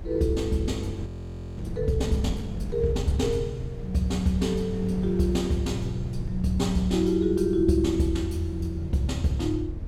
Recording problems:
low-frequency rumble; below 80 Hz, SNR 13 dB
wind noise; below 250 Hz, SNR 15 dB
audio freezing; at 1 s for 0.5 s

